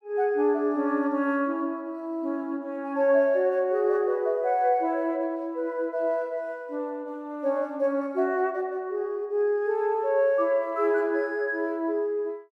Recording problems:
none

